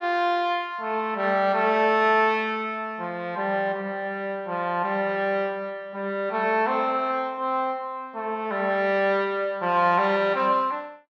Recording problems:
none

